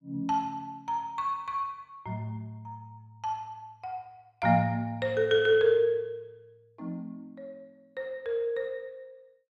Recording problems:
none

